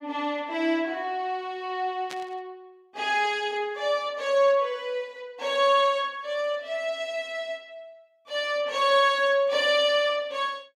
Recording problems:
burst of static; at 2 s; peak -8 dB vs average level

